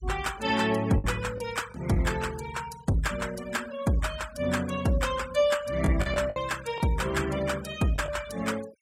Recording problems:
denoising artefacts; signal-to-artefact ratio 16 dB
lost packets; 4% of the sound replaced, filled with the last packet

